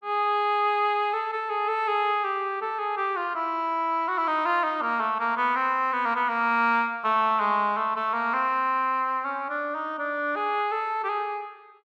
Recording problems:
none

